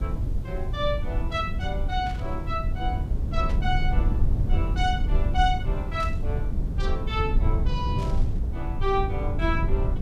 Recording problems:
hiss; slope -2 dB per octave, SNR 29 dB
low-frequency rumble; below 88 Hz, SNR -3 dB
static burst; 4 times, first at 2 s; peak -8 dB vs average level

